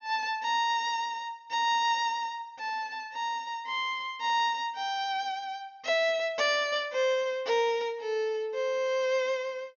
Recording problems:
low-pass filter; nothing above 6.9 kHz

